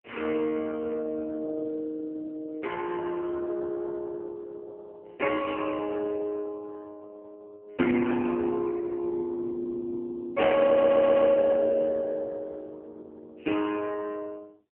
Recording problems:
telephone audio; 240 Hz to 2.1 kHz, AMR-NB
stutter; at 11 s

